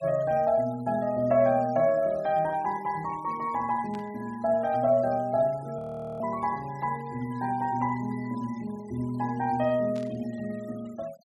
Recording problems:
noise reduction artefacts; signal-to-artefact ratio 24 dB
burst of static; at 4 s and at 10 s; peak -16 dB vs average level
audio freezing; at 6 s

